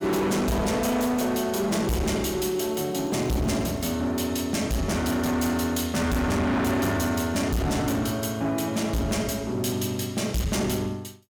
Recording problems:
distortion; hard clipping, signal-to-distortion ratio 7 dB
crackling; from 2.5 to 4 s; loose cable, SNR 28 dB

